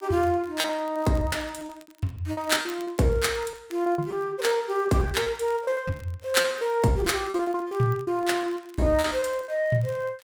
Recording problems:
crackling; vinyl, SNR 28 dB
packet loss; 14% of the sound replaced, filled with repeated pitch periods

